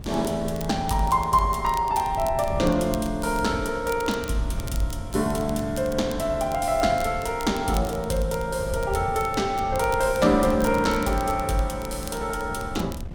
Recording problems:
wind noise; below 120 Hz, SNR 12 dB
crackle; vinyl, SNR 19 dB

